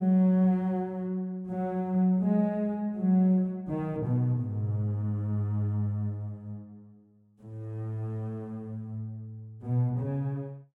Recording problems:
none

